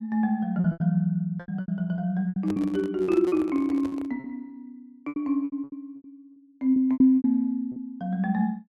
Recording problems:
lost packets; 14% of the sound replaced, filled with repeated pitch periods
microphone handling noise; from 2.5 to 4 s; peak -6 dB vs average level

